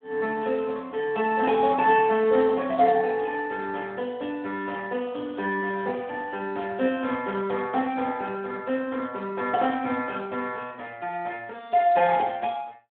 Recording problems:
telephone audio; 280 Hz to 3.5 kHz, Speex

